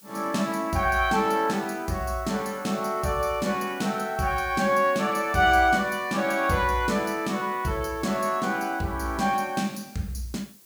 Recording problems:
hiss; SNR 24 dB

